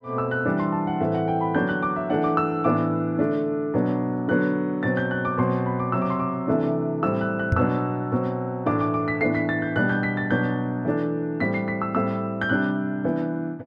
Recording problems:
microphone thump; at 7.5 s; peak +5 dB vs average level

